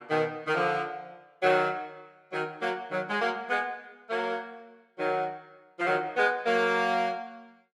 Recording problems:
none

